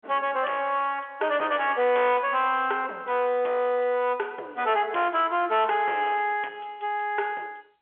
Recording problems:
phone line; 320 Hz to 3.4 kHz, G.711
distortion; soft clipping, signal-to-distortion ratio 10 dB

